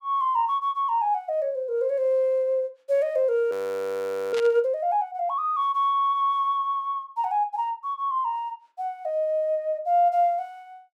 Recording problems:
frozen audio; at 3.5 s for 1 s
burst of static; at 4.5 s; peak -6 dB vs average level

